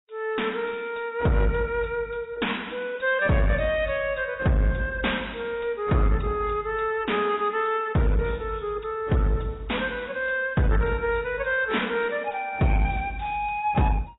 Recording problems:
codec artefacts; AAC, log-spectral distance 5 dB, nothing above 3.8 kHz
distorted audio; soft clipping, signal-to-distortion ratio 10 dB

